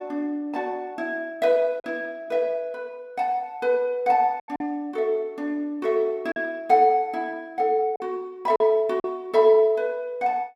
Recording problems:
lost packets; 3% of the sound replaced, filled with silence

